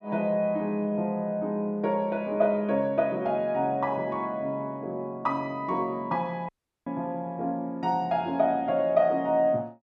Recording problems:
dropout; at 6.5 s

